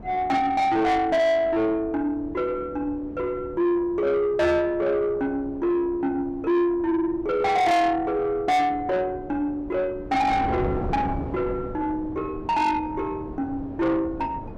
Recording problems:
distortion; soft clipping, signal-to-distortion ratio 8 dB
wind on the microphone; below 470 Hz, SNR 14 dB

